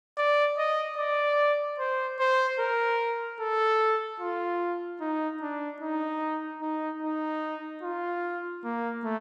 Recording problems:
none

